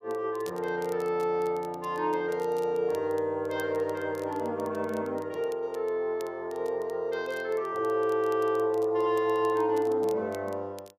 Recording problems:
crackling; vinyl, SNR 25 dB

